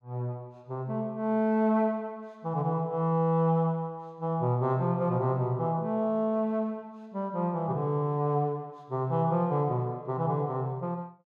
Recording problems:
none

